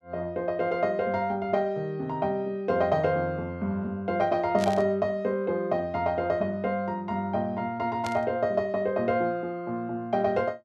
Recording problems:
static burst; at 4.5 s and at 8 s; peak -4 dB vs average level

